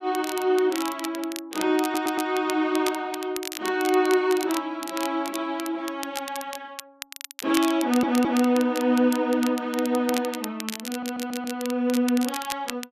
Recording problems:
crackling; vinyl, SNR 11 dB
audio stuttering; at 2 s, at 8 s and at 11 s

